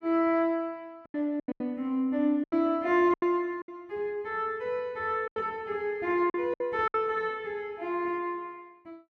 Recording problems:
packet loss; 8% of the sound replaced, filled with silence

